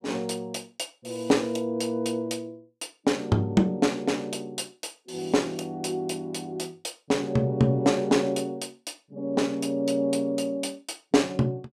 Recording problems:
none

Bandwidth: 14.5 kHz